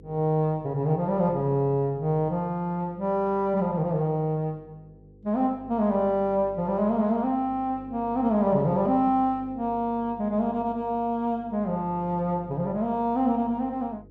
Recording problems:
hum; 50 Hz, harmonics up to 500 Hz, SNR 23 dB

